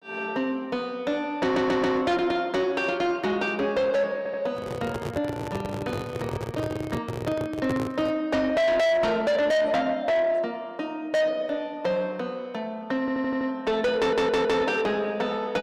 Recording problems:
distortion; soft clipping, signal-to-distortion ratio 7 dB
audio stuttering; 4 times, first at 1.5 s
handling noise; from 4.5 to 8 s; peak -1 dB vs average level

